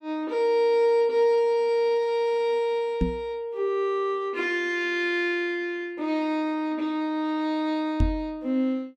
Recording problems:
microphone thump; at 3 s and at 8 s; peak +4 dB vs average level

